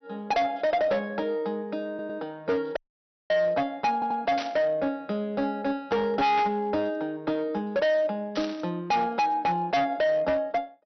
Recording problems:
treble missing; nothing above 5.9 kHz
distorted audio; hard clipping, uneven, signal-to-distortion ratio 7 dB
audio stuttering; at 2 s and at 4 s
audio cutting out; at 3 s for 0.5 s
static burst; at 4.5 s, at 6.5 s and at 8.5 s; peak -4 dB vs average level

